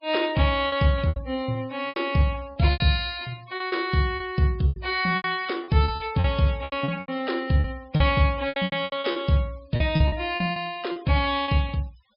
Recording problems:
low-pass filter; nothing above 5.5 kHz
noise reduction artefacts; signal-to-artefact ratio 25 dB
packet loss; 14% of the sound replaced, filled with repeated pitch periods

